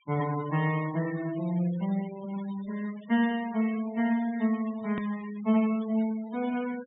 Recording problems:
treble cut off; nothing above 4 kHz
denoising artefacts; signal-to-artefact ratio 19 dB
hard cut with a click; at 5 s

